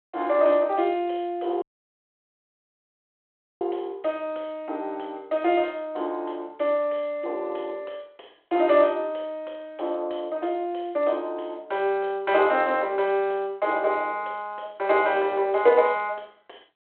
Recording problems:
phone line; 320 Hz to 3.3 kHz, G.726
dropout; at 1.5 s for 2 s

